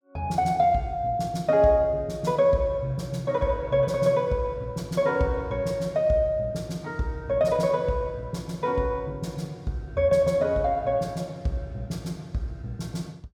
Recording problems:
none

